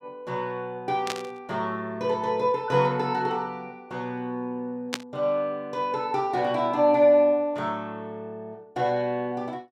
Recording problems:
static burst; at 1 s and at 5 s; peak +2 dB vs average level

